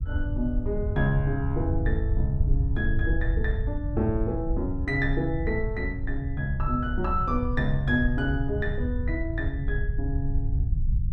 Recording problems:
rumble; below 86 Hz, SNR 0 dB

